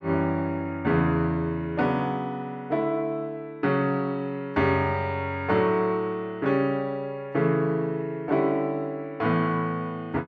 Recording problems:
none

